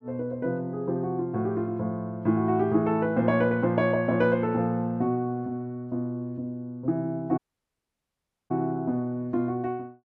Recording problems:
audio cutting out; at 7.5 s for 1 s

